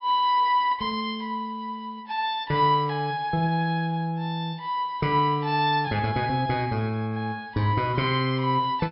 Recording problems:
treble cut off; nothing above 5.3 kHz

